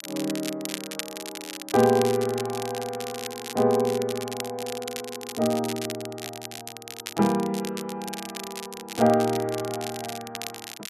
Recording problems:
crackling; vinyl, SNR 10 dB

